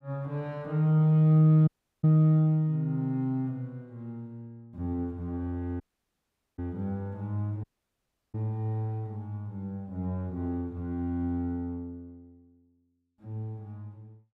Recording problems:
dropout; at 1.5 s, at 6 s for 1 s and at 7.5 s for 0.5 s

